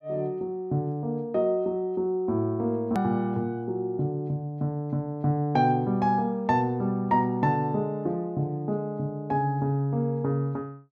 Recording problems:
hard cut with a click; at 3 s

